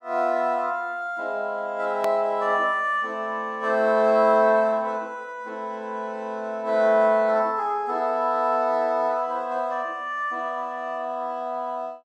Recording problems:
click at an edit; at 2 s

